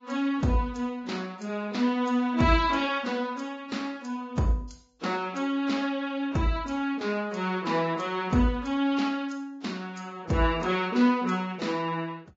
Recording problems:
codec artefacts; Vorbis, log-spectral distance 3 dB, nothing above 7.3 kHz

